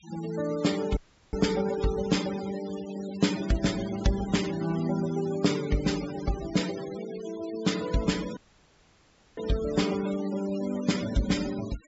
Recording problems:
low-pass filter; nothing above 8 kHz
noise reduction artefacts; signal-to-artefact ratio 13 dB
dropout; at 1 s and at 8.5 s for 1 s

